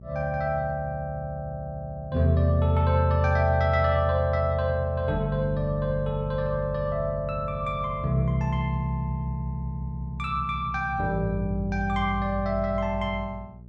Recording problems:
hum; 60 Hz, harmonics up to 600 Hz, SNR 19 dB

